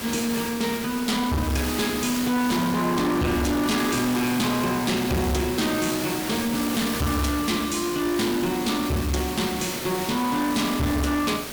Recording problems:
distortion; hard clipping, uneven, signal-to-distortion ratio 7 dB
background hiss; slope -2 dB per octave, SNR 7 dB

